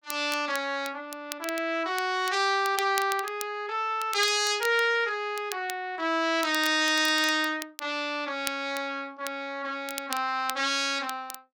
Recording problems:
crackle; vinyl, SNR 13 dB

